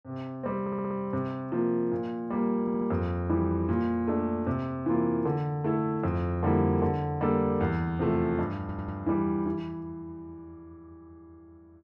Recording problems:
stutter; at 0.5 s, at 2.5 s and at 8.5 s

